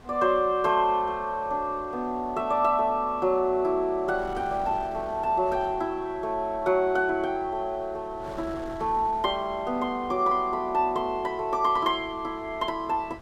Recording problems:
wind on the microphone; below 890 Hz, SNR 20 dB

